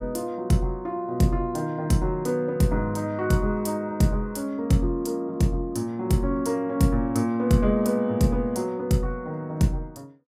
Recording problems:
none

